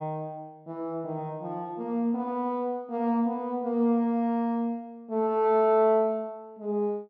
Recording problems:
none

